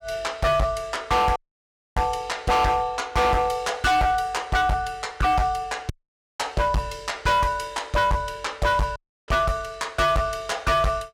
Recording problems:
distortion; hard clipping, signal-to-distortion ratio 6 dB
audio cutting out; at 1.5 s for 0.5 s, at 6 s and at 9 s

